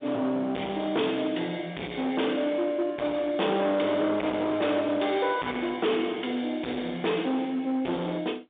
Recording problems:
telephone audio; 220 Hz to 3.7 kHz, G.711
distorted audio; hard clipping, signal-to-distortion ratio 8 dB

